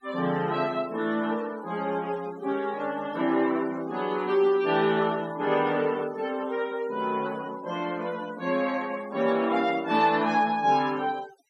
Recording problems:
noise reduction artefacts; signal-to-artefact ratio 21 dB

